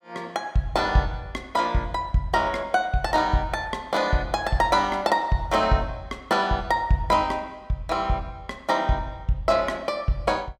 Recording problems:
none

